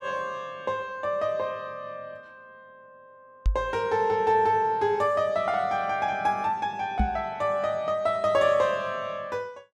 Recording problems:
knock on the microphone; at 3.5 s and at 7 s; peak +4 dB vs average level

